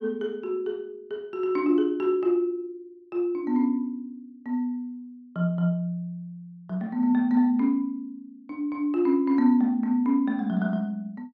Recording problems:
none

